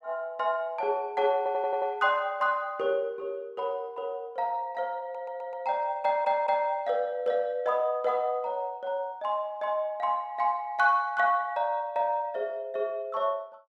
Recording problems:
audio stuttering; at 1.5 s, at 5 s and at 6 s

